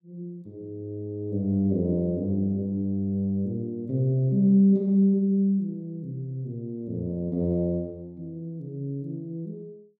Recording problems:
none

